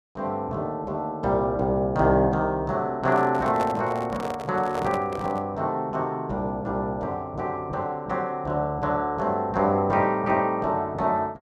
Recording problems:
microphone handling noise; from 3 to 5.5 s; peak -1 dB vs average level

